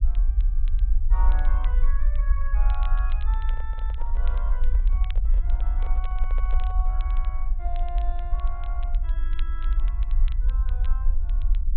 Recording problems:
treble cut off; nothing above 4 kHz
rumble; below 46 Hz, SNR -15 dB
crackle; vinyl, SNR 13 dB
handling noise; from 3.5 to 7 s; peak +1 dB vs average level

